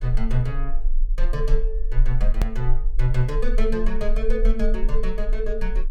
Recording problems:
low-frequency rumble; below 32 Hz, strongest tone 18 Hz, SNR -2 dB
hard cut with a click; at 2.5 s

